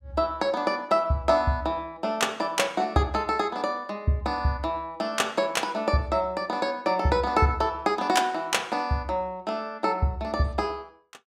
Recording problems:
none

